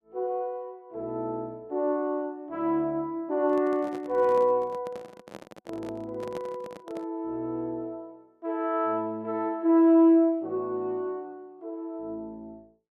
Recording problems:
handling noise; from 3.5 to 7 s; peak -9 dB vs average level

